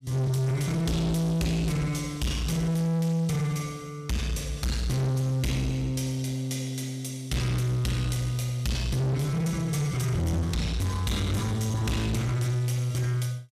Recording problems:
distorted audio; soft clipping, signal-to-distortion ratio 8 dB

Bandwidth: 15 kHz